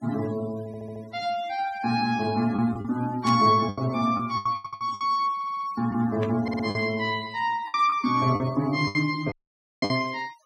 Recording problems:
noise reduction artefacts; signal-to-artefact ratio 22 dB
packet loss; 8% of the sound replaced, filled with the last packet
audio stuttering; 4 times, first at 0.5 s
burst of static; at 3.5 s and at 6 s; peak -6 dB vs average level
audio cutting out; at 9.5 s for 0.5 s

